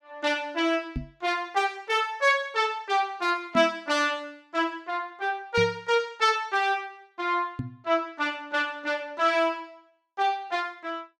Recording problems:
microphone thump; 4 times, first at 1 s; peak 0 dB vs average level

